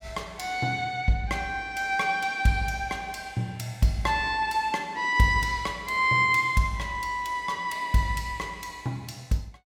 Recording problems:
none

